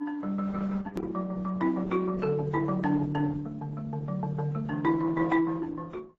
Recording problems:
lossy compression; Opus, then AAC, log-spectral distance 3 dB, nothing above 13.7 kHz
click at an edit; at 1 s

